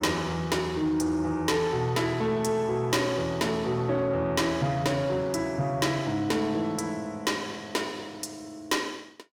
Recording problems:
distortion; soft clipping, signal-to-distortion ratio 12 dB

